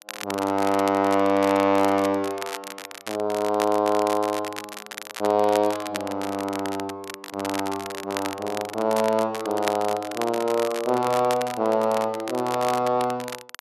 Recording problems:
crackling; vinyl, SNR 12 dB

